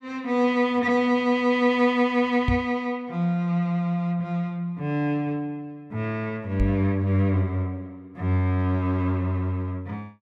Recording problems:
knock on the microphone; at 2.5 s and at 6.5 s; peak +3 dB vs average level

